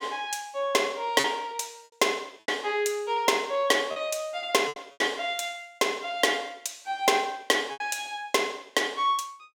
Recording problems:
packet loss; 4% of the sound replaced, filled with repeated pitch periods

